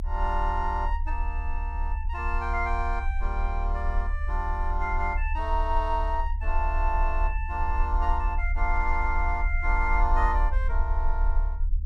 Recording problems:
rumble; below 58 Hz, strongest tone 32 Hz, SNR 0 dB

